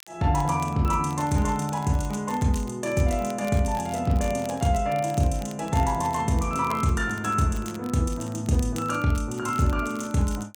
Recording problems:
crackling; vinyl, SNR 22 dB

